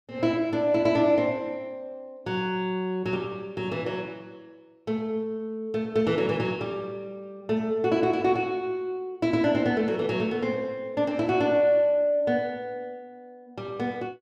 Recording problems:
none

